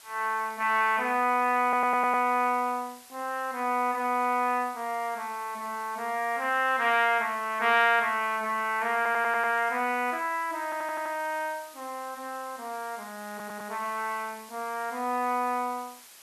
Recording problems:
hiss; slope +1 dB per octave, SNR 21 dB
audio stuttering; 4 times, first at 1.5 s

